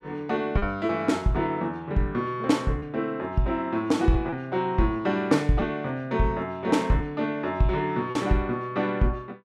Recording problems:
lost packets; 2% of the sound replaced, filled with repeated pitch periods

